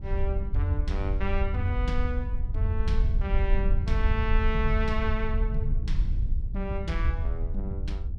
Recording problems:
wind noise; below 64 Hz, SNR -3 dB

